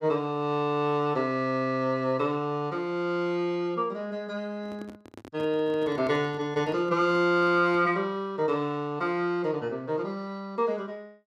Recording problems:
microphone handling noise; from 4.5 to 8 s; peak -10 dB vs average level

